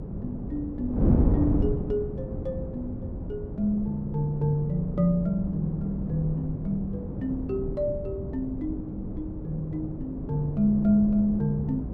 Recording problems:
electrical hum; 60 Hz, harmonics up to 540 Hz, SNR 20 dB
wind on the microphone; below 250 Hz, SNR 4 dB

